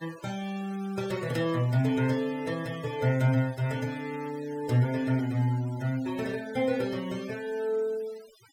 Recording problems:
denoising artefacts; signal-to-artefact ratio 20 dB

